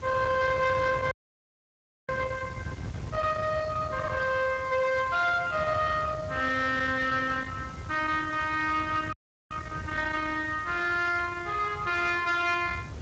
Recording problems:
lossy compression; Speex, log-spectral distance 4 dB, nothing above 7.3 kHz
distortion; soft clipping, signal-to-distortion ratio 13 dB
background hiss; slope -2 dB per octave, SNR 26 dB
wind on the microphone; below 1.3 kHz, SNR 12 dB
audio cutting out; at 1 s for 1 s and at 9 s

